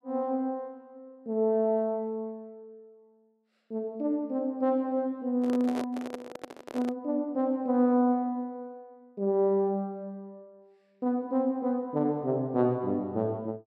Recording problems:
microphone handling noise; from 5.5 to 7 s; peak -3 dB vs average level

